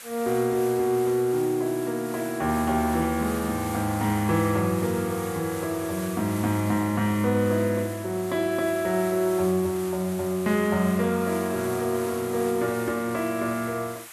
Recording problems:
hiss; SNR 14 dB

